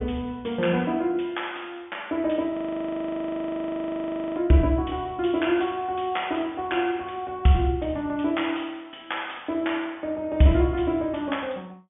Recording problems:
treble missing; nothing above 3.5 kHz
frozen audio; at 2.5 s for 2 s

